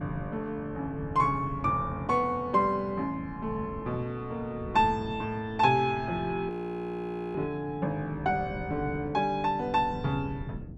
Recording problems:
wind on the microphone; below 210 Hz, SNR 14 dB
frozen audio; at 6.5 s for 1 s

